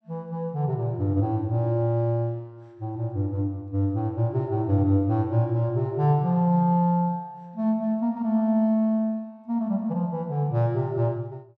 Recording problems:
none

